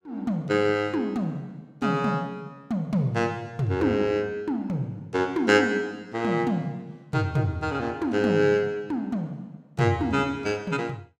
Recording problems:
none

